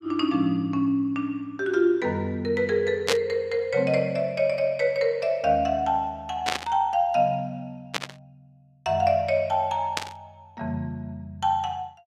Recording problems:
static burst; 4 times, first at 3 s; peak +4 dB vs average level

